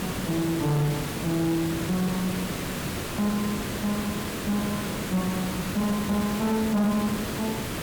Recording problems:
distorted audio; soft clipping, signal-to-distortion ratio 12 dB
hiss; SNR 3 dB

